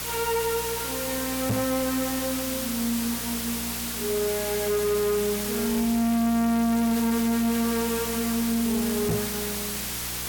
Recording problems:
distorted audio; hard clipping, signal-to-distortion ratio 8 dB
hum; 60 Hz, harmonics up to 480 Hz, SNR 16 dB
hiss; slope 0 dB per octave, SNR 4 dB
knock on the microphone; at 1.5 s and at 9 s; peak +3 dB vs average level

